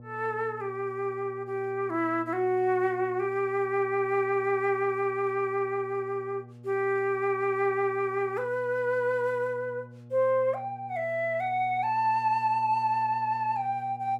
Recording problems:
electrical hum; 60 Hz, harmonics up to 840 Hz, SNR 19 dB

